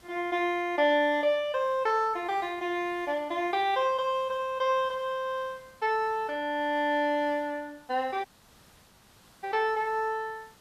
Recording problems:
hiss; slope -2 dB per octave, SNR 28 dB
audio cutting out; at 8.5 s for 1 s

